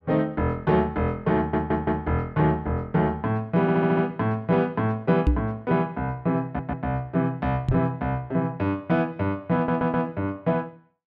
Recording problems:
audio stuttering; 4 times, first at 1.5 s
microphone thump; at 5.5 s and at 7.5 s; peak +7 dB vs average level

